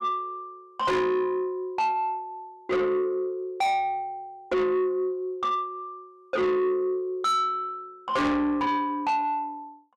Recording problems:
distorted audio; soft clipping, signal-to-distortion ratio 7 dB

